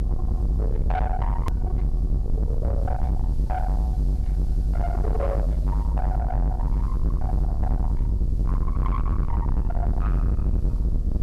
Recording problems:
distorted audio; soft clipping, signal-to-distortion ratio 6 dB
hum; 60 Hz, harmonics up to 1.2 kHz, SNR 11 dB
hiss; SNR 26 dB
rumble; below 76 Hz, SNR -8 dB
edit click; at 1.5 s

